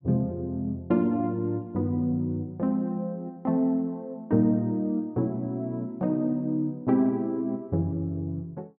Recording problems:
none

